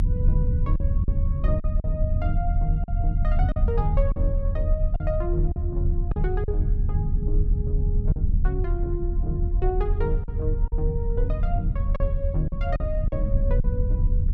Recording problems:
low-frequency rumble; below 80 Hz, strongest tone 30 Hz, SNR -7 dB
packet loss; 5% of the sound replaced, filled with silence

